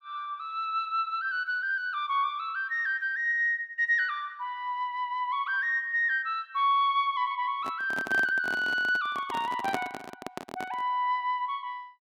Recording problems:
microphone handling noise; from 7.5 to 11 s; peak +1 dB vs average level

